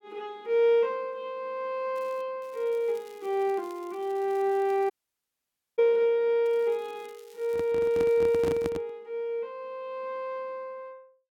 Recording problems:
crackling; 4 times, first at 2 s; loose cable, SNR 29 dB
dropout; at 5 s for 1 s
microphone handling noise; from 7.5 to 9 s; peak -1 dB vs average level

